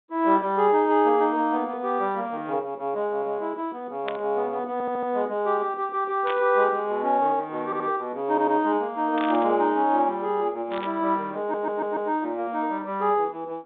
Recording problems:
phone line; 260 Hz to 3.7 kHz, G.726
burst of static; 4 times, first at 4 s; peak -7 dB vs average level
stutter; 4 times, first at 4.5 s

